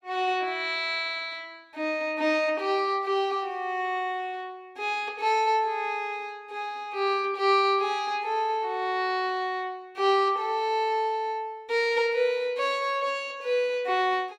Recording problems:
none

